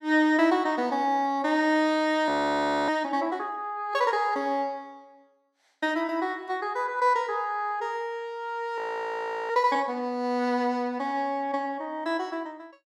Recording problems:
frozen audio; at 2.5 s for 0.5 s and at 9 s for 0.5 s

